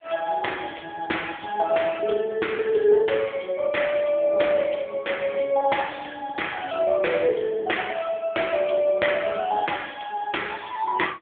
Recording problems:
phone line; 240 Hz to 3.5 kHz, AMR-NB

